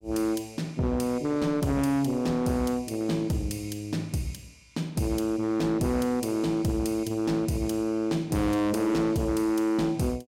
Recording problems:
distorted audio; hard clipping, signal-to-distortion ratio 8 dB

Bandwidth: 16.5 kHz